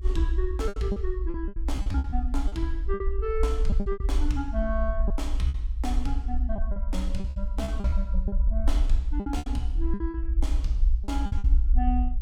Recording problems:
rumble; below 58 Hz, SNR -4 dB
packet loss; 12% of the sound replaced, filled with repeated pitch periods

